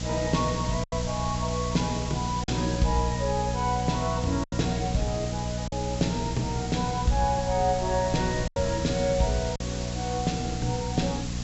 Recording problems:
low-pass filter; nothing above 7.7 kHz
hum; 60 Hz, harmonics up to 540 Hz, SNR 4 dB
hiss; slope 0 dB per octave, SNR 10 dB
wind on the microphone; below 120 Hz, SNR 15 dB
packet loss; 3% of the sound replaced, filled with silence

